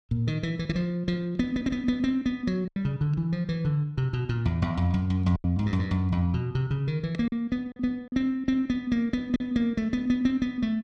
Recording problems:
packet loss; 3% of the sound replaced, filled with silence

